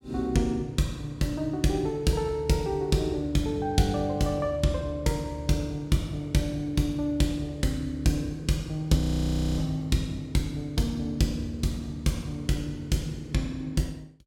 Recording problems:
frozen audio; at 9 s for 0.5 s

